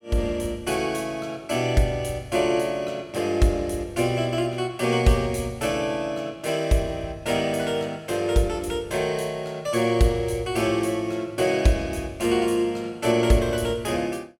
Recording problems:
none

